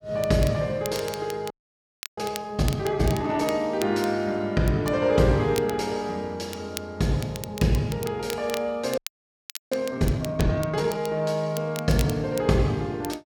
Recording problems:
crackling; vinyl, SNR 15 dB
audio freezing; at 1.5 s for 0.5 s and at 9 s for 0.5 s

